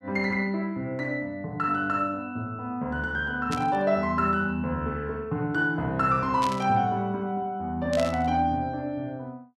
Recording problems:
static burst; at 3.5 s, at 6.5 s and at 8 s; peak -4 dB vs average level

